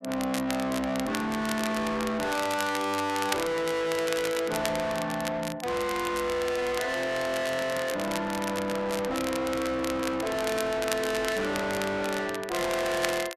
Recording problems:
distortion; soft clipping, signal-to-distortion ratio 6 dB
crackling; vinyl, SNR 9 dB
handling noise; from 7.5 to 11 s; peak -6 dB vs average level

